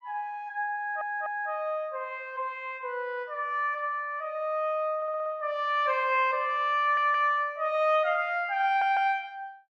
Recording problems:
stutter; 4 times, first at 1 s

